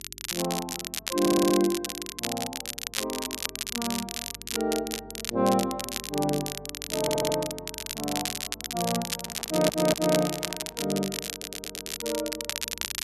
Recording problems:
hum; 50 Hz, harmonics up to 400 Hz, SNR 23 dB
crackle; vinyl, SNR 3 dB
audio stuttering; 4 times, first at 1 s
microphone handling noise; from 9 to 11 s; peak -10 dB vs average level

